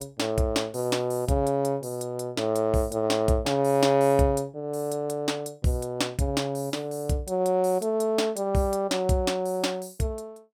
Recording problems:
none

